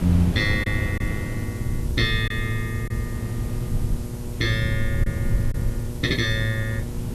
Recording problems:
electrical hum; 60 Hz, harmonics up to 1.1 kHz, SNR 10 dB
hiss; slope +4 dB per octave, SNR 19 dB
low-frequency rumble; below 110 Hz, SNR 5 dB
wind on the microphone; below 190 Hz, SNR 7 dB
packet loss; 1.9% of the sound replaced, filled with silence

